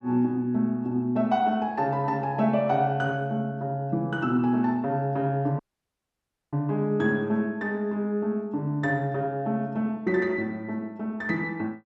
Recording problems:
dropout; at 5.5 s for 1 s

